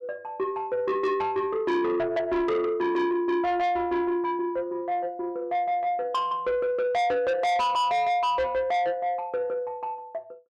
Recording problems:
distorted audio; soft clipping, signal-to-distortion ratio 7 dB

